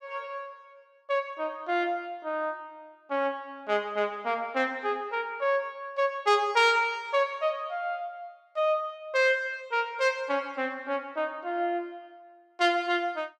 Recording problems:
none

